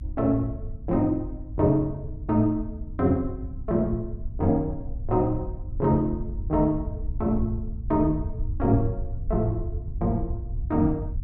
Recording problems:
hum; 50 Hz, harmonics up to 300 Hz, SNR 18 dB
rumble; below 86 Hz, SNR 9 dB

